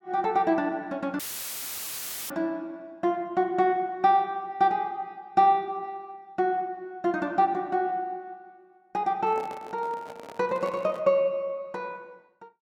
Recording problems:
audio cutting out; at 1 s for 1 s; filled with static
handling noise; from 9 to 11 s; peak -10 dB vs average level

